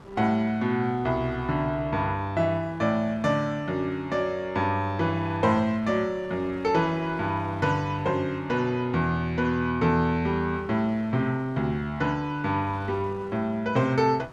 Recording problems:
wind on the microphone; below 1.1 kHz, SNR 23 dB

